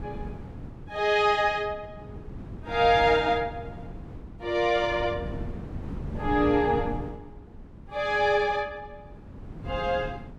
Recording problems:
wind on the microphone; below 230 Hz, SNR 14 dB

